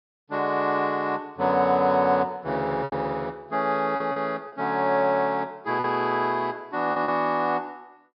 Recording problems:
low-pass filter; nothing above 5.3 kHz
lost packets; 4% of the sound replaced, filled with repeated pitch periods

